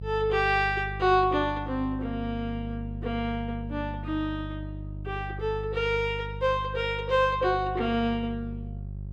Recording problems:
electrical hum; 50 Hz, harmonics up to 400 Hz, SNR 9 dB

